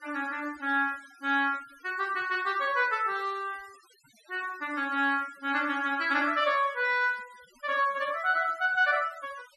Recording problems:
noise reduction artefacts; signal-to-artefact ratio 23 dB

